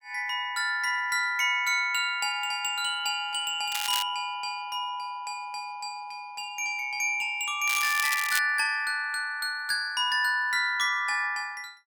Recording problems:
crackling; at 3.5 s and at 7.5 s; loose cable, SNR 5 dB

